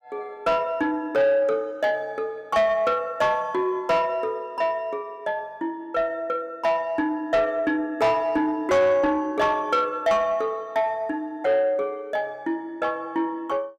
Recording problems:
distorted audio; soft clipping, signal-to-distortion ratio 11 dB

